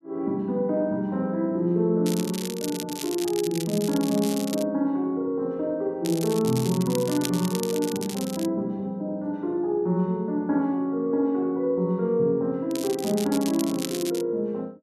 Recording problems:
crackling; from 2 to 4.5 s, from 6 to 8.5 s and from 13 to 14 s; loose cable, SNR 10 dB

